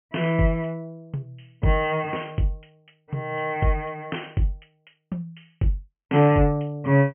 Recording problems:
treble cut off; nothing above 3.1 kHz

